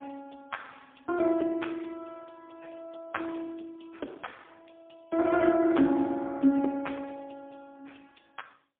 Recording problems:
phone line; 190 Hz to 3.4 kHz, AMR-NB, then MP3

